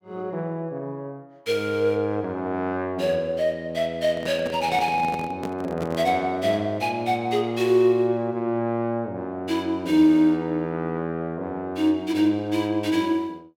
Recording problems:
microphone handling noise; from 4 to 6 s; peak -5 dB vs average level

